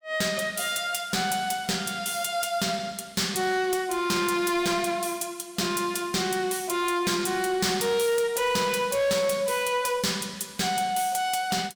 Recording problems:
distortion; hard clipping, signal-to-distortion ratio 10 dB

